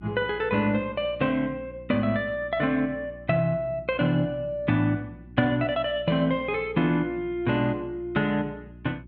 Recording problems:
hum; 60 Hz, harmonics up to 360 Hz, SNR 20 dB

